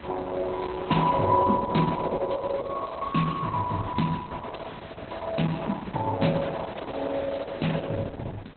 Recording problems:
lossy compression; Opus, log-spectral distance 5 dB, nothing above 4.1 kHz
wind noise; below 1.8 kHz, SNR 15 dB

